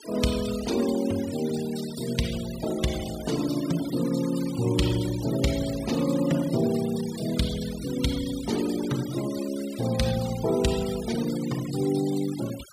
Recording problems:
noise reduction artefacts; signal-to-artefact ratio 13 dB

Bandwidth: 15.5 kHz